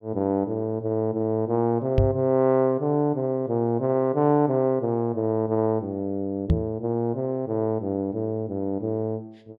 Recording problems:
microphone bump; at 2 s and at 6.5 s; peak +7 dB vs average level

